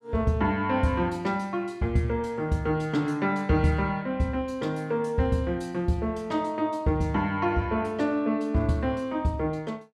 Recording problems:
none

